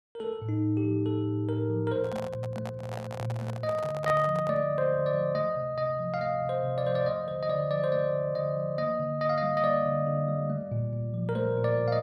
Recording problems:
handling noise; from 2 to 4.5 s; peak -3 dB vs average level

